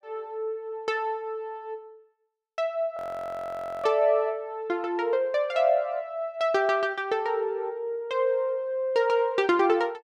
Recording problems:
frozen audio; at 3 s for 1 s

